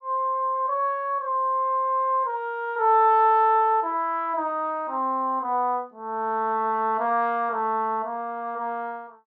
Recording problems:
none

